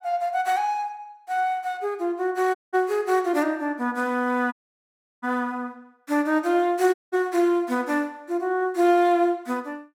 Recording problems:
audio cutting out; at 2.5 s, at 4.5 s for 0.5 s and at 7 s

